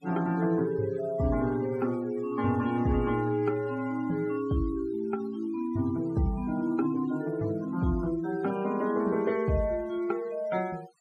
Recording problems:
noise reduction artefacts; signal-to-artefact ratio 21 dB

